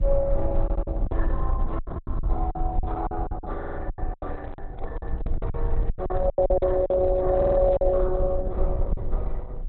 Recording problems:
lossy codec; MP2, then Opus, log-spectral distance 2 dB, nothing above 3.9 kHz
low-frequency rumble; below 58 Hz, SNR 4 dB
packet loss; 14% of the sound replaced, filled with silence
stutter; at 0.5 s, at 3.5 s and at 7.5 s
microphone handling noise; from 4 to 8 s; peak -9 dB vs average level

